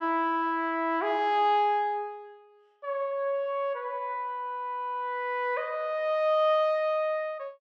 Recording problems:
none

